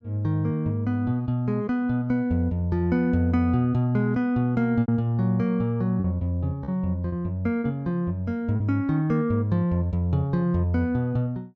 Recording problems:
lost packets; 2% of the sound replaced, filled with repeated pitch periods

